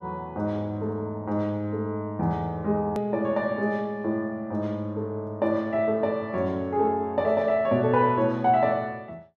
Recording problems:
click at an edit; at 3 s

